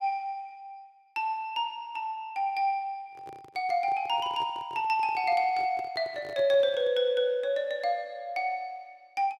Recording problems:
handling noise; from 3 to 7 s; peak -12 dB vs average level

